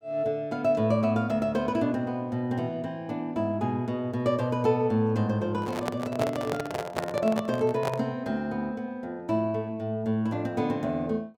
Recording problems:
microphone handling noise; from 5.5 to 8 s; peak +3 dB vs average level

